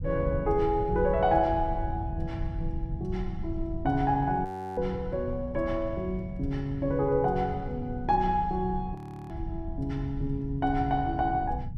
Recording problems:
rumble; below 110 Hz, SNR 8 dB
frozen audio; at 4.5 s and at 9 s

